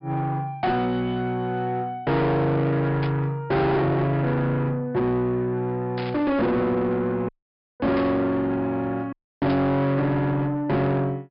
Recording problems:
low-pass filter; nothing above 5.5 kHz
distorted audio; soft clipping, signal-to-distortion ratio 6 dB
static burst; 4 times, first at 3 s; peak -8 dB vs average level
audio cutting out; at 7.5 s for 0.5 s and at 9 s

